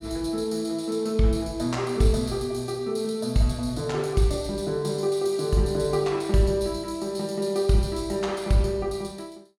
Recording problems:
none

